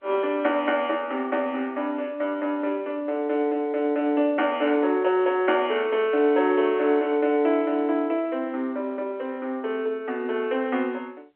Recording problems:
phone line; 240 Hz to 3.3 kHz, G.711

